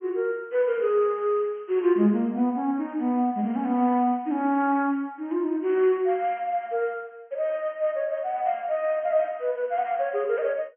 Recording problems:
treble cut off; nothing above 3.2 kHz

